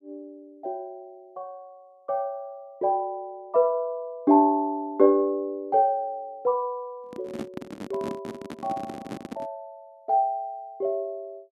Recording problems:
handling noise; from 7 to 9.5 s; peak -4 dB vs average level

